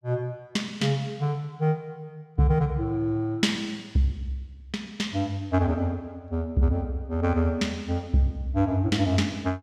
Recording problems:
none

